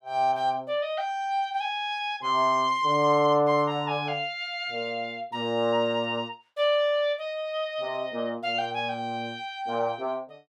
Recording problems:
none

